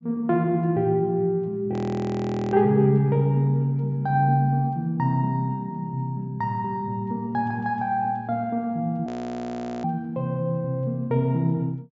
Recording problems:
treble cut off; nothing above 8 kHz
audio freezing; at 1.5 s for 1 s and at 9 s for 1 s

